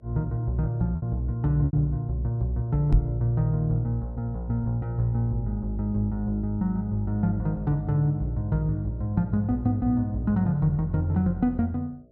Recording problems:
hum; 60 Hz, harmonics up to 660 Hz, SNR 34 dB
packet loss; 1.4% of the sound replaced, filled with repeated pitch periods
microphone thump; at 3 s; peak +9 dB vs average level

